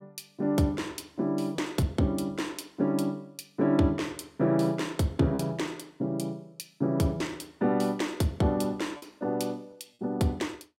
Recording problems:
packet loss; 1.7% of the sound replaced, filled with repeated pitch periods

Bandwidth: 16.5 kHz